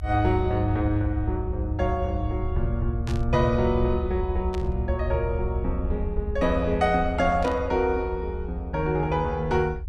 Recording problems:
rumble; below 74 Hz, SNR 5 dB
static burst; at 3 s, at 4.5 s and at 7.5 s; peak -10 dB vs average level

